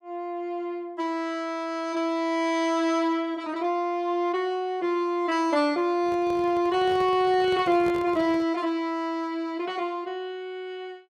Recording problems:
handling noise; from 6 to 8.5 s; peak -7 dB vs average level

